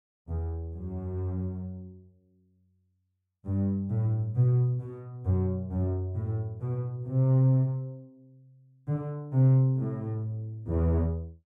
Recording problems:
none

